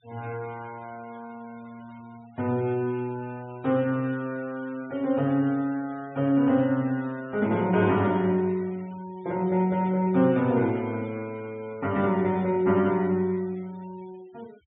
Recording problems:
low-pass filter; nothing above 4 kHz
noise reduction artefacts; signal-to-artefact ratio 27 dB

